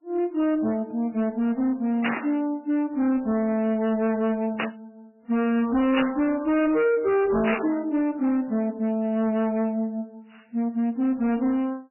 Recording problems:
codec artefacts; AAC, then MP3, log-spectral distance 2 dB, nothing above 2.7 kHz
distorted audio; hard clipping, uneven, signal-to-distortion ratio 7 dB
burst of static; 4 times, first at 2 s; peak +2 dB vs average level

